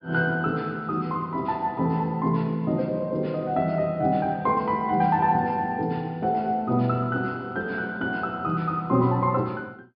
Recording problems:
treble missing; nothing above 5.5 kHz

